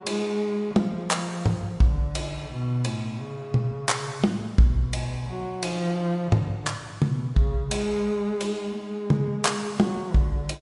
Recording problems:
codec artefacts; MP3, log-spectral distance 2 dB, nothing above 10.7 kHz

